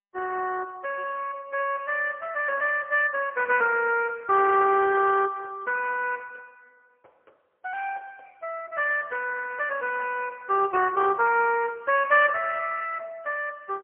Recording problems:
phone line; 260 Hz to 2.8 kHz, AMR-NB, then MP3

